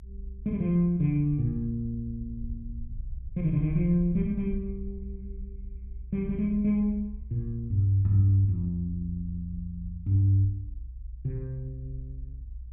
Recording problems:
low-frequency rumble; below 62 Hz, SNR 13 dB

